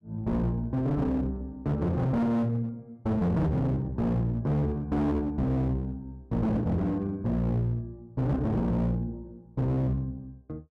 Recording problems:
distorted audio; hard clipping, uneven, signal-to-distortion ratio 7 dB

